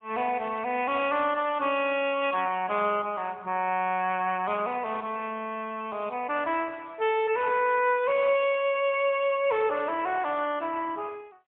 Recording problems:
phone line; 260 Hz to 3.4 kHz, AMR-NB, then MP3

